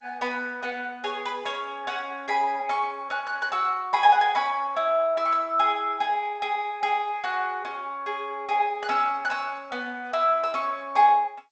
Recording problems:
codec artefacts; MP2, then G.722, log-spectral distance 2 dB

